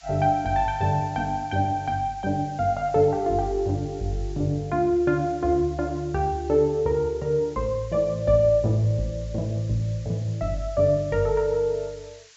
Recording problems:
treble cut off; nothing above 7.5 kHz
background hiss; SNR 26 dB

